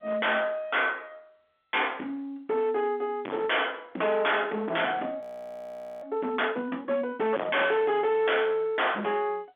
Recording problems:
telephone audio; 190 Hz to 3.5 kHz, G.711
distortion; hard clipping, signal-to-distortion ratio 2 dB
frozen audio; at 5 s for 1 s

